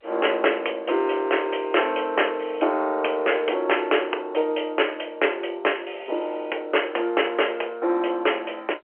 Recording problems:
telephone audio; 340 Hz to 3.1 kHz, G.711

